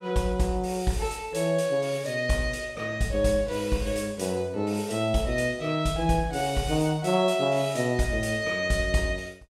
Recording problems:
none

